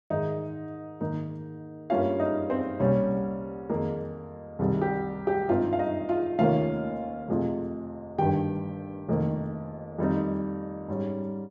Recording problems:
none

